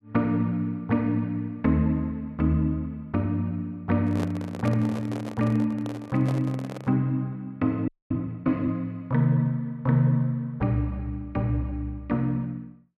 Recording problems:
microphone handling noise; from 4 to 7 s; peak -4 dB vs average level
audio freezing; at 8 s

